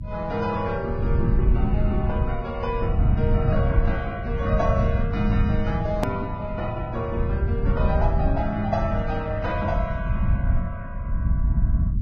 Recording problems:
lossy codec; Vorbis, log-spectral distance 2 dB, nothing above 13.1 kHz
rumble; below 120 Hz, SNR -1 dB
click at an edit; at 6 s

